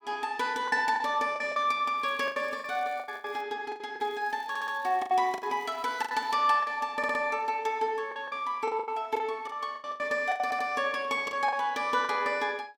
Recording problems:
lost packets; 12% of the sound replaced, filled with the last packet
crackle; from 2 to 3.5 s and from 4 to 6.5 s; loose cable, SNR 30 dB
stutter; at 4.5 s, at 7 s and at 10 s

